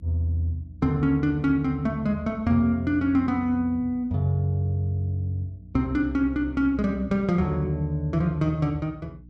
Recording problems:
hum; 60 Hz, harmonics up to 300 Hz, SNR 23 dB

